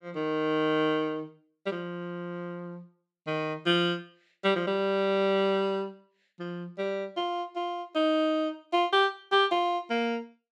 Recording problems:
none

